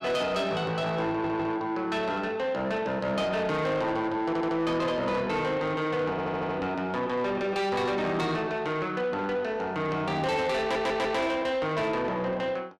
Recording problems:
distortion; soft clipping, signal-to-distortion ratio 11 dB
audio stuttering; 4 times, first at 1 s

